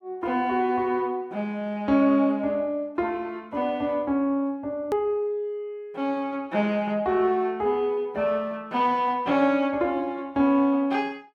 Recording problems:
click at an edit; at 5 s

